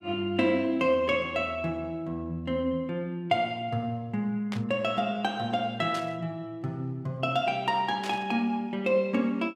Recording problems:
burst of static; at 4.5 s, at 6 s and at 8 s; peak -5 dB vs average level

